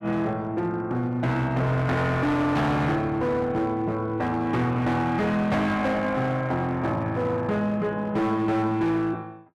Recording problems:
distorted audio; hard clipping, signal-to-distortion ratio 10 dB

